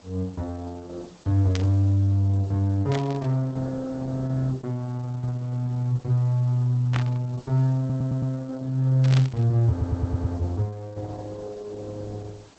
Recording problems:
codec artefacts; Opus, log-spectral distance 3 dB
hiss; SNR 28 dB
burst of static; 4 times, first at 1.5 s; peak -2 dB vs average level
stutter; at 8 s and at 9.5 s

